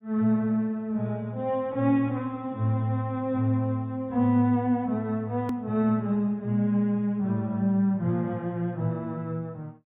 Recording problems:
treble cut off; nothing above 4 kHz
edit click; at 5.5 s

